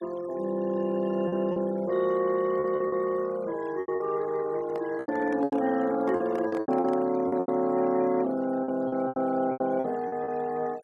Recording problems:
noise reduction artefacts; signal-to-artefact ratio 22 dB
lost packets; 11% of the sound replaced, filled with repeated pitch periods
handling noise; from 4.5 to 7.5 s; peak -8 dB vs average level

